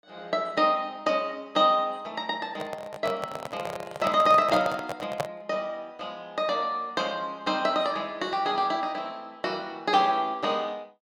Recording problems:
microphone handling noise; from 2.5 to 5.5 s; peak +3 dB vs average level

